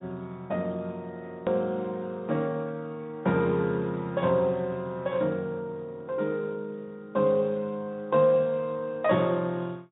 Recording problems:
treble missing; nothing above 3.8 kHz
lossy compression; Speex, log-spectral distance 2 dB
hard cut with a click; at 1.5 s

